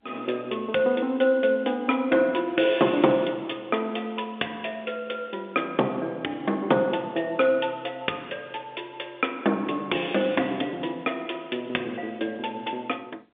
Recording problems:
phone line; 240 Hz to 3.6 kHz, G.711

